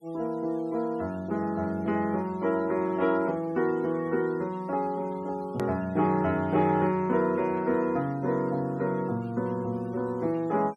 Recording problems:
denoising artefacts; signal-to-artefact ratio 27 dB
edit click; at 5.5 s

